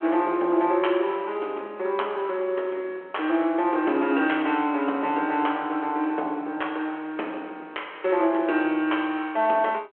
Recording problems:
telephone audio; 280 Hz to 3.4 kHz, G.726

